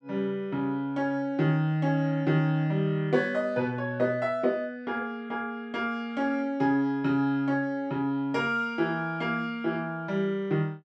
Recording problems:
none

